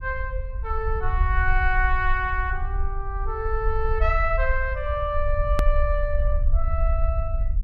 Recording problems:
low-frequency rumble; below 58 Hz, SNR 0 dB
edit click; at 5.5 s

